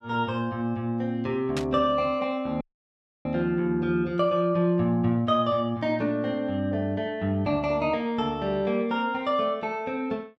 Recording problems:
static burst; at 1.5 s; peak -3 dB vs average level
audio cutting out; at 2.5 s for 0.5 s

